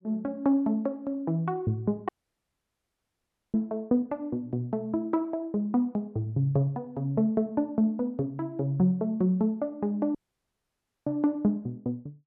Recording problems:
dropout; at 2 s for 1.5 s and at 10 s for 1 s

